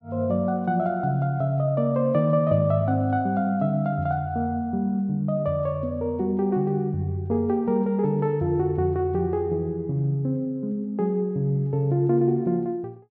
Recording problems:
none

